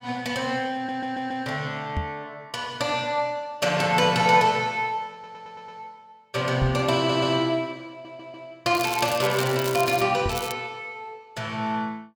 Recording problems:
stutter; 4 times, first at 1 s
microphone bump; at 2 s, at 6.5 s and at 10 s; peak +1 dB vs average level
crackle; from 9 to 10 s and at 10 s; loose cable, SNR 11 dB

